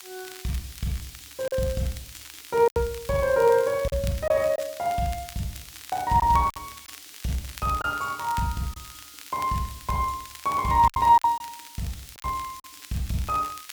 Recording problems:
hiss; slope +4 dB per octave, SNR 18 dB
crackle; vinyl, SNR 20 dB
lost packets; 6% of the sound replaced, filled with silence

